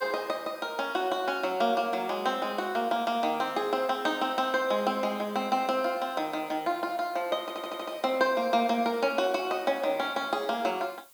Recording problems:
hiss; slope -1 dB per octave, SNR 24 dB
audio stuttering; at 7.5 s

